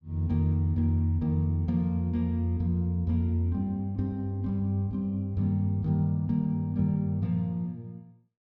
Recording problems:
none

